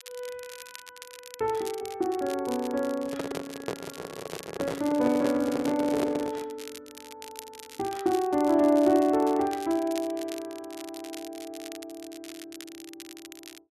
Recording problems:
crackle; vinyl, SNR 18 dB
microphone handling noise; from 3 to 6.5 s; peak +1 dB vs average level

